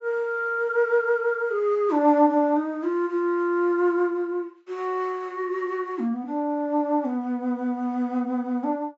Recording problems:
treble missing; nothing above 8 kHz

